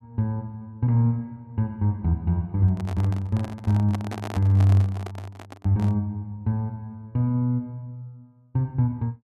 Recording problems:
microphone handling noise; from 2.5 to 6 s; peak -6 dB vs average level

